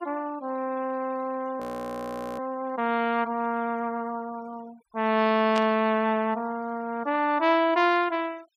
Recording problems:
denoising artefacts; signal-to-artefact ratio 25 dB
audio freezing; at 1.5 s for 1 s
static burst; at 5.5 s; peak -3 dB vs average level

